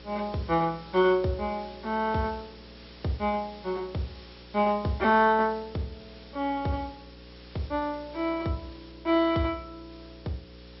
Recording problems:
low-pass filter; nothing above 5.5 kHz
hum; 60 Hz, harmonics up to 540 Hz, SNR 22 dB
hiss; slope 0 dB per octave, SNR 22 dB

